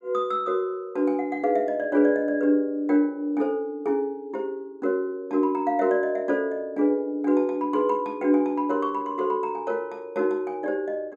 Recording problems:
none

